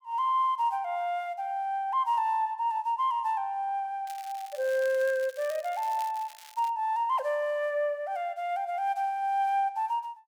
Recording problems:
crackling; from 4 to 6.5 s; loose cable, SNR 20 dB

